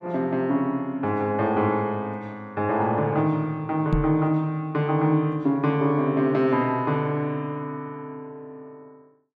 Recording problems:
knock on the microphone; at 4 s; peak +5 dB vs average level

